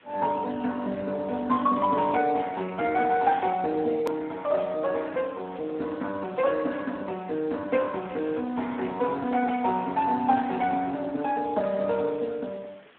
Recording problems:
telephone audio; 150 Hz to 2.8 kHz, Speex
background hiss; SNR 27 dB
edit click; at 4 s

